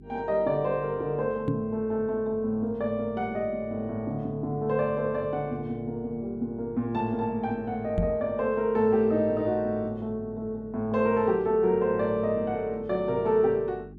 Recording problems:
mains hum; 50 Hz, harmonics up to 400 Hz, SNR 20 dB
knock on the microphone; at 1.5 s and at 8 s; peak +3 dB vs average level

